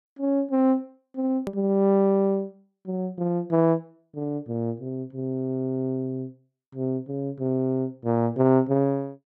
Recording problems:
hard cut with a click; at 1.5 s

